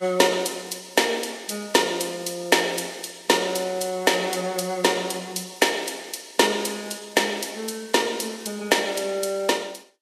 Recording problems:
codec artefacts; Vorbis, log-spectral distance 5 dB, nothing above 13.8 kHz

